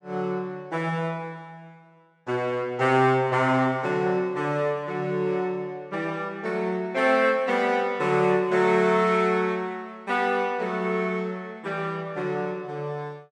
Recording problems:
none

